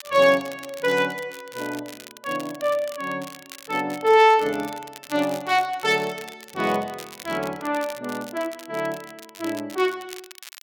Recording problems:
crackling; vinyl, SNR 18 dB

